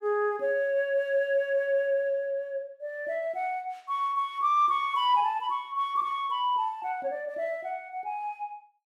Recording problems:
none

